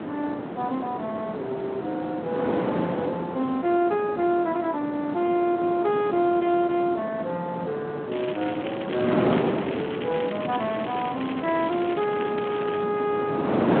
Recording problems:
telephone audio; 150 Hz to 3.7 kHz, Speex
wind on the microphone; below 690 Hz, SNR 4 dB
crackle; from 8 to 13 s; loose cable, SNR 12 dB

